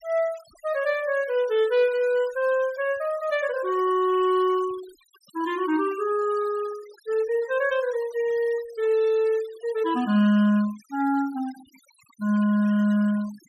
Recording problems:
denoising artefacts; signal-to-artefact ratio 22 dB

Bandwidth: 14.5 kHz